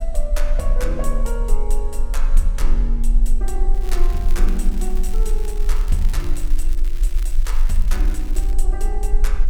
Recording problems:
rumble; below 34 Hz, strongest tone 24 Hz, SNR -8 dB
crackling; from 3.5 to 8.5 s; loose cable, SNR 12 dB

